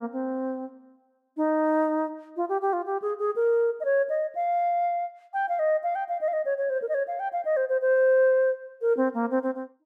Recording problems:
none

